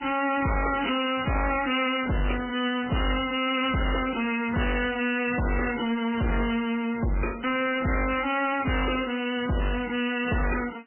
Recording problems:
lossy codec; MP3, log-spectral distance 8 dB, nothing above 2.9 kHz
distorted audio; hard clipping, signal-to-distortion ratio 5 dB

